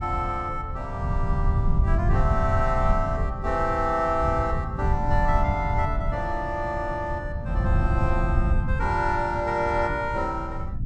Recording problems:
rumble; below 110 Hz, SNR 1 dB

